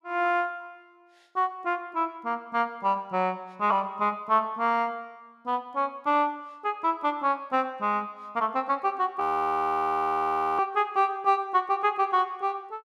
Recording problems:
frozen audio; at 9 s for 1.5 s

